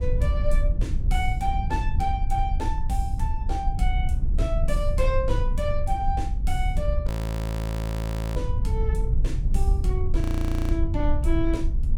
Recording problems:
rumble; below 72 Hz, SNR -5 dB
frozen audio; at 7 s for 1.5 s and at 10 s for 0.5 s

